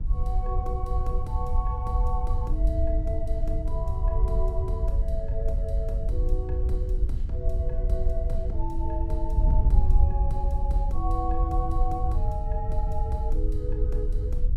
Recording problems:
wind on the microphone; below 62 Hz, SNR -7 dB

